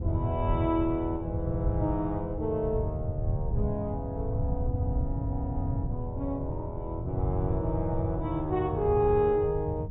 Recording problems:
low-pass filter; nothing above 4 kHz
wind on the microphone; below 120 Hz, SNR 2 dB

